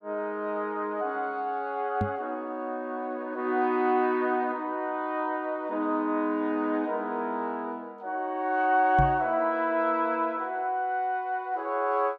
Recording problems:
microphone thump; at 2 s and at 9 s; peak +4 dB vs average level

